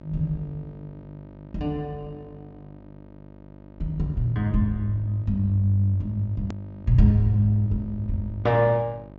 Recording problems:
low-pass filter; nothing above 8 kHz
hum; 50 Hz, harmonics up to 1.6 kHz, SNR 20 dB
hard cut with a click; at 6.5 s

